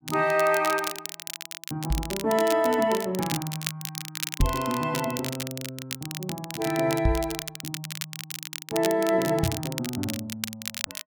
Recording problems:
crackle; vinyl, SNR 8 dB
knock on the microphone; 4 times, first at 2 s; peak +6 dB vs average level

